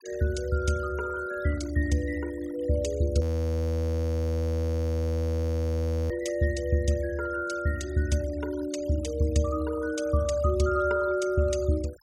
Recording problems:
denoising artefacts; signal-to-artefact ratio 20 dB
frozen audio; at 3 s for 3 s

